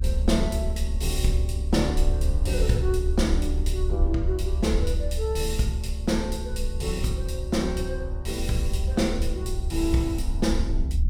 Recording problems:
rumble; below 68 Hz, strongest tone 30 Hz, SNR 0 dB

